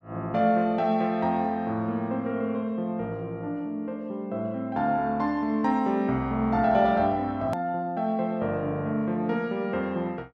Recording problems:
click at an edit; at 7.5 s

